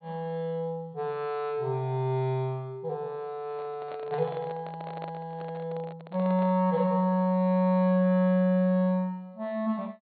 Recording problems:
treble missing; nothing above 4.4 kHz
microphone handling noise; from 3.5 to 6.5 s; peak -9 dB vs average level

